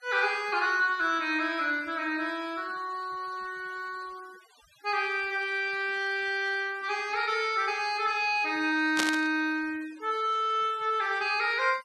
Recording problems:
noise reduction artefacts; signal-to-artefact ratio 23 dB
burst of static; at 9 s; peak +4 dB vs average level

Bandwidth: 13 kHz